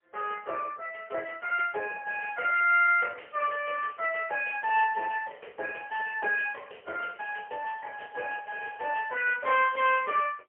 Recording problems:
phone line; 370 Hz to 2.8 kHz, AMR-NB, then MP3

